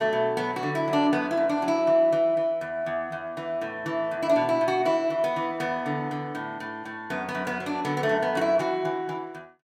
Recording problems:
none

